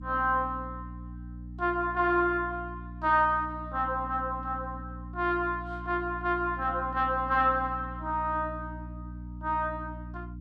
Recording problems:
electrical hum; 60 Hz, harmonics up to 300 Hz, SNR 12 dB

